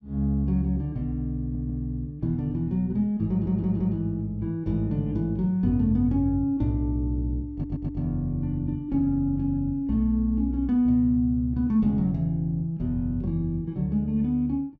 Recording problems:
audio stuttering; at 1.5 s, at 3.5 s and at 7.5 s

